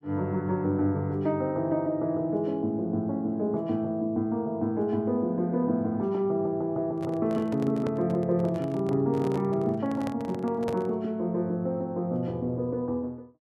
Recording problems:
handling noise; from 7 to 11 s; peak -3 dB vs average level

